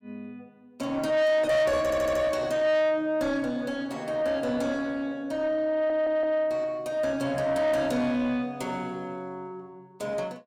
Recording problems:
distorted audio; soft clipping, signal-to-distortion ratio 6 dB
stutter; at 2 s and at 5.5 s

